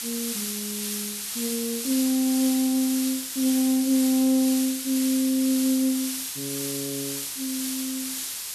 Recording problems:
background hiss; SNR 4 dB

